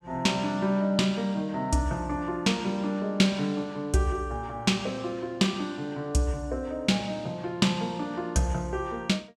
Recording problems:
none

